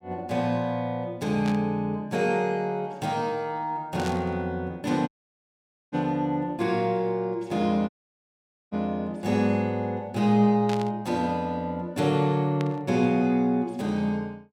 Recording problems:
static burst; 4 times, first at 1.5 s; peak -6 dB vs average level
audio cutting out; at 5 s for 1 s and at 8 s for 1 s

